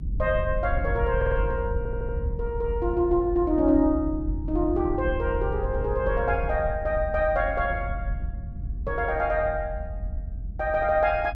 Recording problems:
rumble; below 76 Hz, strongest tone 46 Hz, SNR 6 dB
audio stuttering; at 1 s and at 2 s

